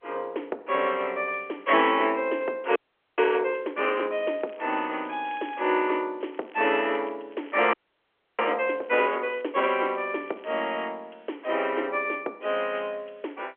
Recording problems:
phone line; 280 Hz to 3.3 kHz, G.711
audio freezing; at 3 s and at 7.5 s for 0.5 s
crackle; 4 times, first at 4 s; loose cable, SNR 27 dB

